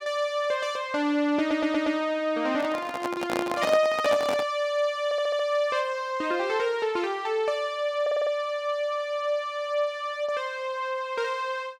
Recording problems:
stutter; at 1.5 s, at 5 s and at 8 s
microphone handling noise; from 2.5 to 4.5 s; peak +2 dB vs average level

